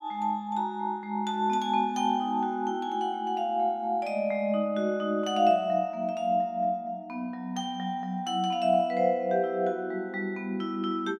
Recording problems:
none

